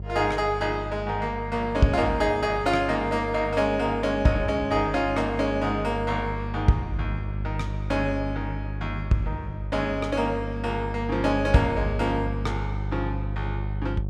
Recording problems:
mains hum; 50 Hz, harmonics up to 550 Hz, SNR 7 dB

